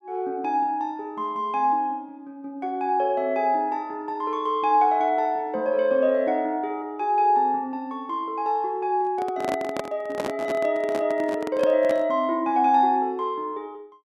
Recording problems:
microphone handling noise; from 9 to 12 s; peak -2 dB vs average level

